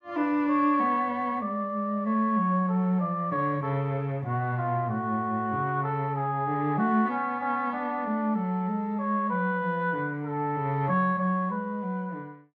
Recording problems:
none

